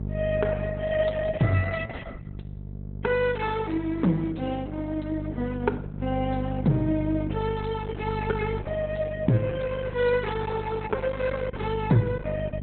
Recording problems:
lossy compression; Opus, log-spectral distance 4 dB, nothing above 4 kHz
electrical hum; 50 Hz, harmonics up to 500 Hz, SNR 8 dB

